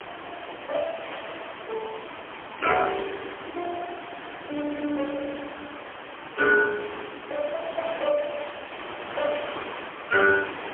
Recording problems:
phone line; 260 Hz to 2.8 kHz, AMR-NB, then MP3
hiss; SNR 10 dB

